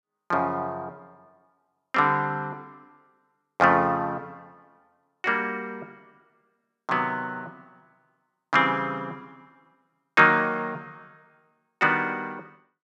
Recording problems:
none

